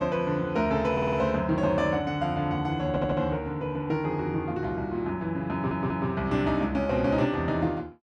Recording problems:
stutter; at 1 s, at 3 s and at 5.5 s

